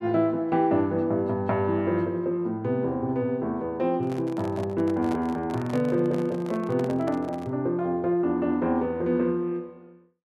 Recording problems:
microphone handling noise; from 4 to 7.5 s; peak -7 dB vs average level

